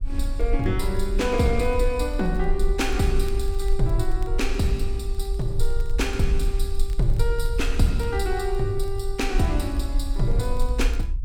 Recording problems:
low-frequency rumble; below 46 Hz, strongest tone 18 Hz, SNR 2 dB
crackling; vinyl, SNR 29 dB

